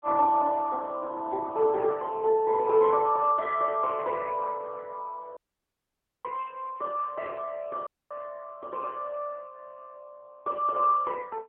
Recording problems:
phone line; 220 Hz to 2.6 kHz, AMR-NB
dropout; at 5.5 s for 1 s and at 8 s

